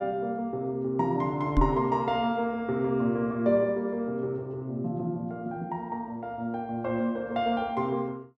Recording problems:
knock on the microphone; at 1.5 s; peak +6 dB vs average level

